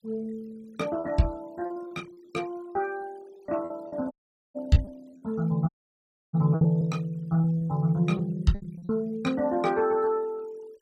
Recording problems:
noise reduction artefacts; signal-to-artefact ratio 26 dB
lost packets; 7% of the sound replaced, filled with repeated pitch periods
dropout; at 4 s and at 5.5 s for 0.5 s

